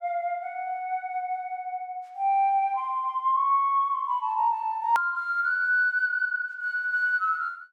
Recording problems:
click at an edit; at 5 s

